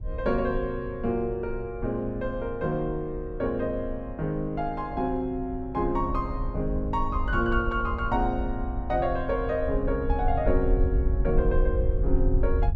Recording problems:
wind noise; below 60 Hz, SNR 4 dB

